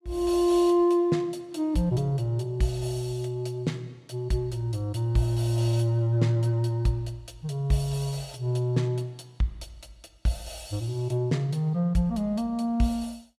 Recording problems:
none

